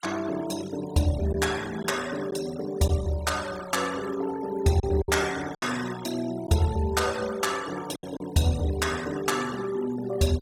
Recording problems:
noise reduction artefacts; signal-to-artefact ratio 14 dB
lost packets; 3% of the sound replaced, filled with silence

